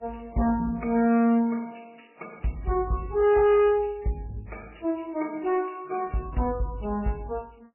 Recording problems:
lossy compression; MP3, then AAC, log-spectral distance 4 dB, nothing above 2.5 kHz
distorted audio; hard clipping, uneven, signal-to-distortion ratio 11 dB

